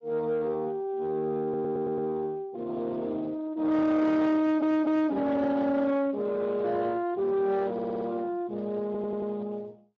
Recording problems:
lossy codec; Speex, log-spectral distance 2 dB
distorted audio; soft clipping, signal-to-distortion ratio 10 dB
audio stuttering; 4 times, first at 1.5 s

